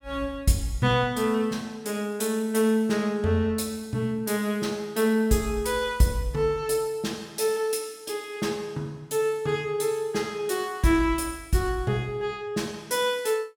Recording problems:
none

